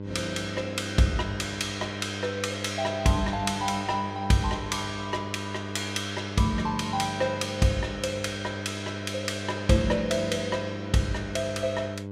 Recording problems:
electrical hum; 50 Hz, harmonics up to 1.1 kHz, SNR 8 dB

